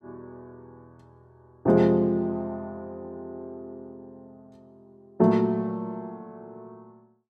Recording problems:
none

